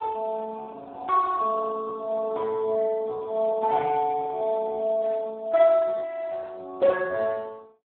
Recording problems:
phone line; 300 Hz to 2.2 kHz, Speex

